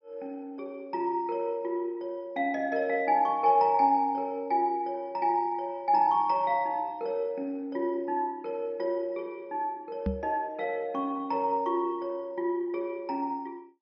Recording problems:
treble cut off; nothing above 6 kHz
microphone thump; at 10 s; peak +2 dB vs average level

